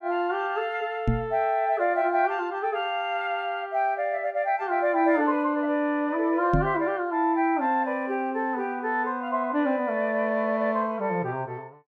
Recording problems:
microphone thump; at 1 s and at 6.5 s; peak +5 dB vs average level

